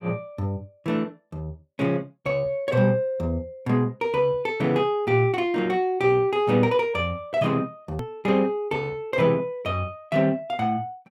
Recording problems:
hard cut with a click; at 8 s

